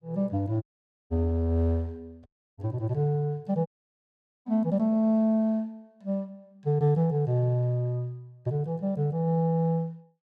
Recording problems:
dropout; at 0.5 s, at 2.5 s and at 3.5 s for 1 s

